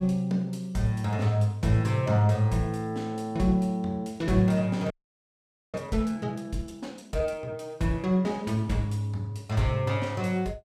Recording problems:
audio freezing; at 5 s for 1 s

